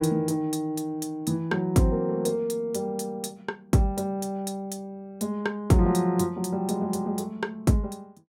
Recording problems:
none

